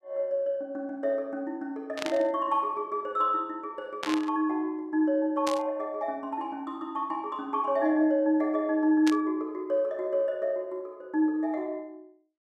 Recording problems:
static burst; 4 times, first at 2 s; peak -1 dB vs average level

